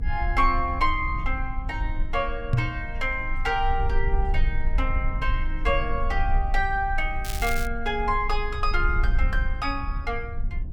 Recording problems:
rumble; below 52 Hz, strongest tone 24 Hz, SNR 3 dB
microphone thump; at 2.5 s; peak +9 dB vs average level
crackle; at 7.5 s; loose cable, SNR 9 dB

